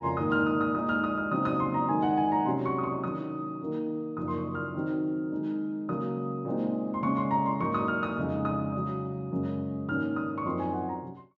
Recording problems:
low-pass filter; nothing above 8 kHz

